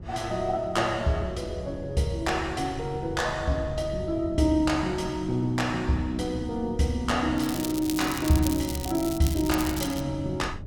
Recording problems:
wind on the microphone; below 140 Hz, SNR 14 dB
crackling; from 7.5 to 10 s; loose cable, SNR 9 dB

